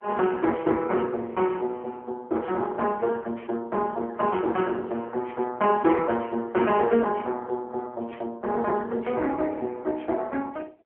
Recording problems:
phone line; 220 Hz to 3.1 kHz, AMR-NB

